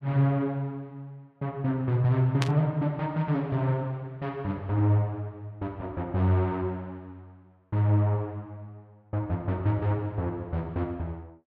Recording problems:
static burst; at 2.5 s; peak +1 dB vs average level

